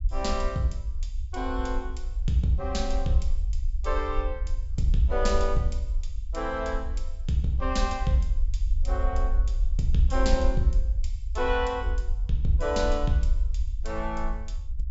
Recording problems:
treble missing; nothing above 8 kHz
rumble; below 54 Hz, SNR 1 dB

